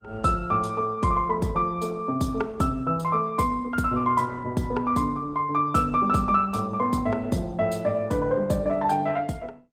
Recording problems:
lossy codec; Opus, log-spectral distance 2 dB, nothing above 18.9 kHz

